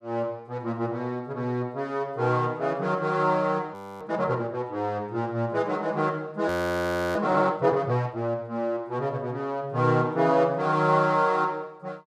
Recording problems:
audio freezing; at 3.5 s and at 6.5 s for 0.5 s

